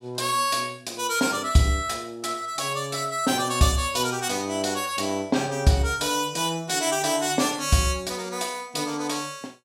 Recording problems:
none

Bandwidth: 16 kHz